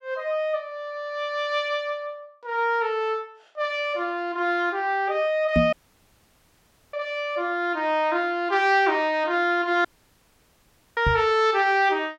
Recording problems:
microphone bump; at 5.5 s and at 11 s; peak +5 dB vs average level
dropout; at 5.5 s for 1 s and at 10 s for 1 s

